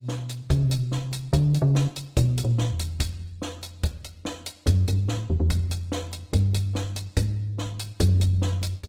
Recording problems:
lossy codec; Opus, log-spectral distance 3 dB, nothing above 18 kHz

